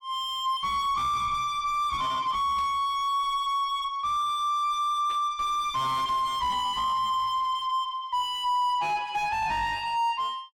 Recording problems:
distortion; soft clipping, signal-to-distortion ratio 7 dB
static burst; at 2.5 s and at 5 s; peak -16 dB vs average level

